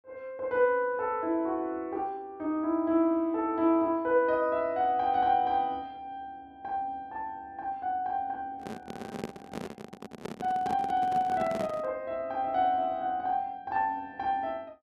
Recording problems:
handling noise; from 8.5 to 12 s; peak -2 dB vs average level

